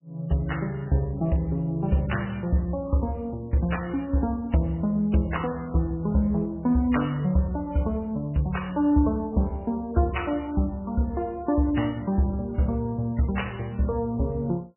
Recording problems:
lossy compression; MP3, log-spectral distance 2 dB, nothing above 2.9 kHz

